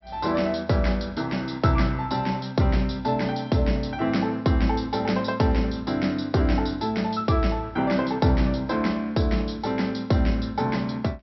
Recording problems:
treble cut off; nothing above 5.7 kHz

